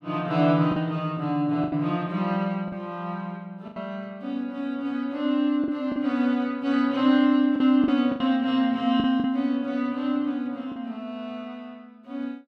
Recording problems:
lost packets; 5% of the sound replaced, filled with the last packet

